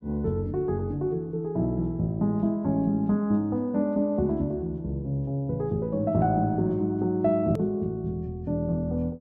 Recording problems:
hard cut with a click; at 7.5 s

